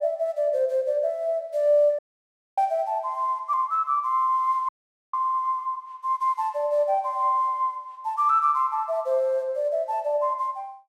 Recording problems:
dropout; at 2 s for 0.5 s and at 4.5 s

